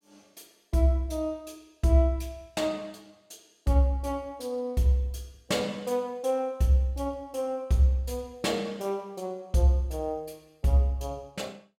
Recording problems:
none

